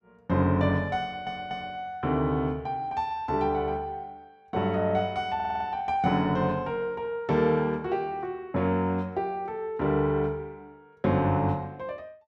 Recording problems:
stutter; at 1 s and at 5.5 s

